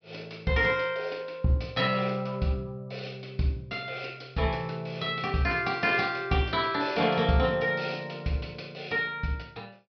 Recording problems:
treble missing; nothing above 5.5 kHz

